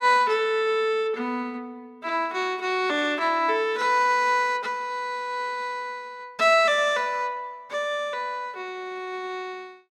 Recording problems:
none

